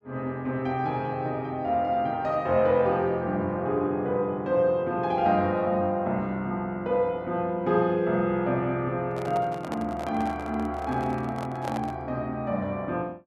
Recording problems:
handling noise; from 9 to 12 s; peak -3 dB vs average level

